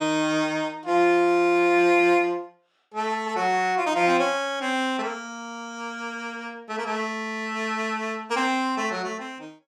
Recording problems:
none

